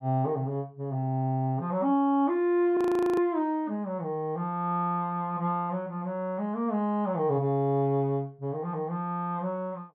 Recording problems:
audio freezing; at 3 s

